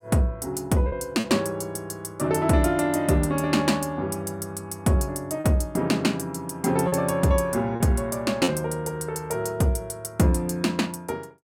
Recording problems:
lost packets; 2% of the sound replaced, filled with repeated pitch periods

